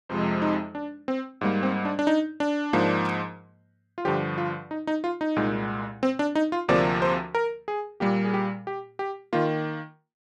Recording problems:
burst of static; at 3 s; peak -15 dB vs average level

